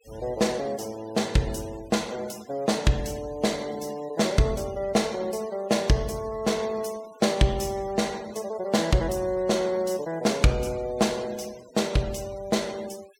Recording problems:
denoising artefacts; signal-to-artefact ratio 20 dB

